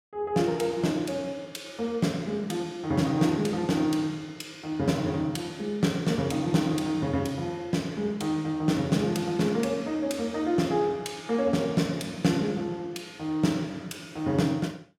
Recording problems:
none

